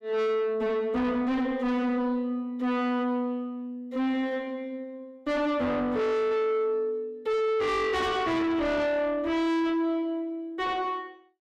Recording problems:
distortion; soft clipping, signal-to-distortion ratio 6 dB

